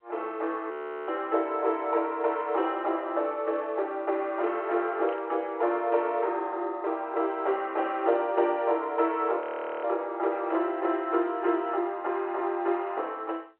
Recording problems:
telephone audio; 300 Hz to 3.2 kHz, G.711
frozen audio; at 0.5 s and at 9.5 s
static burst; at 5 s; peak -13 dB vs average level

